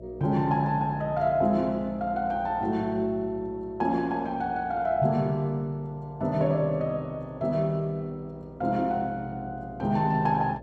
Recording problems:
hum; 60 Hz, harmonics up to 660 Hz, SNR 20 dB

